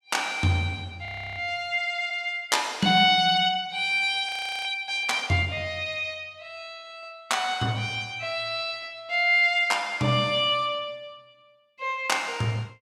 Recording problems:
audio freezing; at 1 s and at 4.5 s

